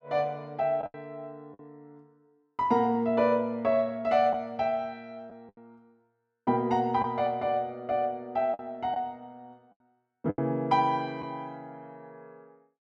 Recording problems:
lost packets; 4% of the sound replaced, filled with the last packet

